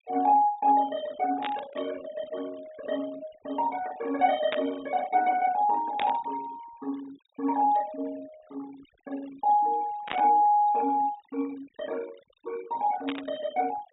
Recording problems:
treble missing; nothing above 4 kHz
noise reduction artefacts; signal-to-artefact ratio 21 dB
burst of static; 5 times, first at 1.5 s; peak -1 dB vs average level

